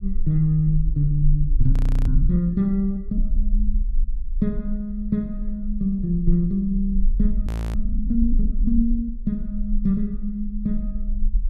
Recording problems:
low-frequency rumble; below 38 Hz, strongest tone 30 Hz, SNR 4 dB
frozen audio; at 1.5 s and at 7.5 s

